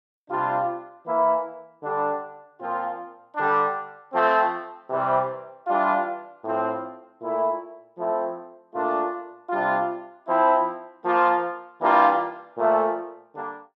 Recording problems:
none

